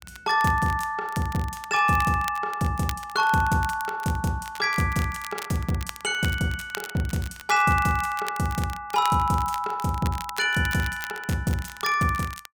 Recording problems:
crackle; vinyl, SNR 15 dB

